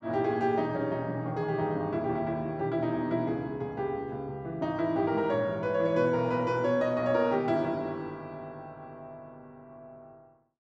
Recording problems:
none

